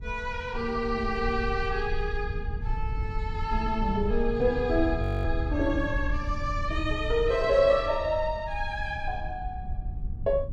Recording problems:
rumble; below 78 Hz, SNR 6 dB
audio freezing; at 5 s

